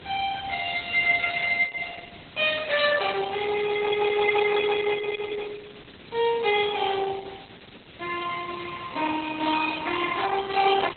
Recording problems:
lossy compression; Opus, log-spectral distance 13 dB, nothing above 3.9 kHz
hiss; SNR 21 dB

